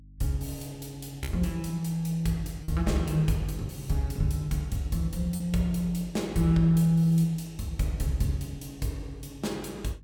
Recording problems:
hum; 50 Hz, harmonics up to 300 Hz, SNR 23 dB
packet loss; 1.2% of the sound replaced, filled with repeated pitch periods

